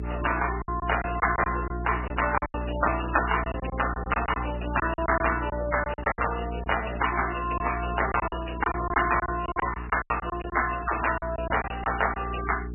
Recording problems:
lossy compression; MP3, log-spectral distance 10 dB, nothing above 2.9 kHz
electrical hum; 60 Hz, harmonics up to 420 Hz, SNR 8 dB
packet loss; 11% of the sound replaced, filled with silence

